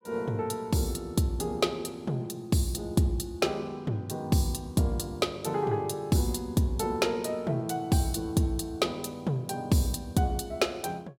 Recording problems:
none

